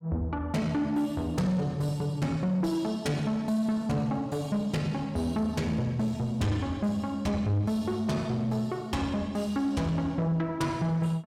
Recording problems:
distorted audio; soft clipping, signal-to-distortion ratio 11 dB

